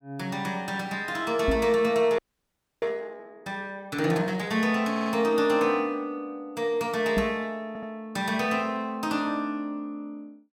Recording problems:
knock on the microphone; at 1.5 s and at 7 s; peak +4 dB vs average level
frozen audio; at 2 s for 0.5 s
stutter; at 5 s and at 7.5 s

